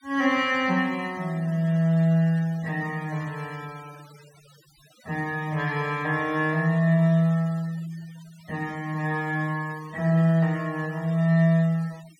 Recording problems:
denoising artefacts; signal-to-artefact ratio 24 dB

